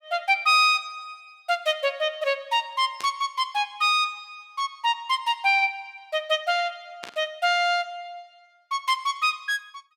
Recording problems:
burst of static; at 3 s and at 7 s; peak -8 dB vs average level

